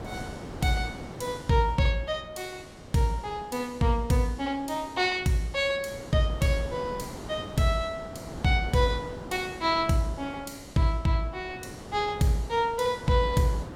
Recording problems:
wind noise; below 650 Hz, SNR 14 dB

